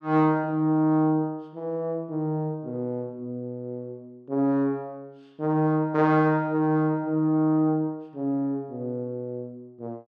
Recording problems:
none

